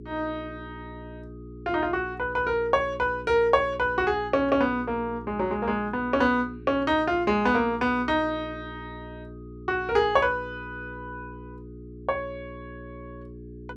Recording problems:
electrical hum; 60 Hz, harmonics up to 420 Hz, SNR 16 dB

